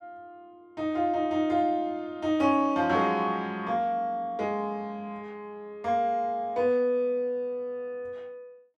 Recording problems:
none

